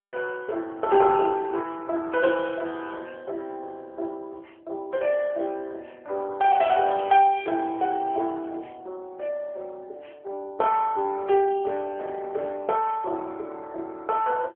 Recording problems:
phone line; 300 Hz to 3.2 kHz, AMR-NB

